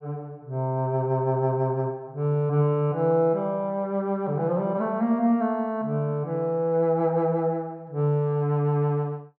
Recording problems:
none

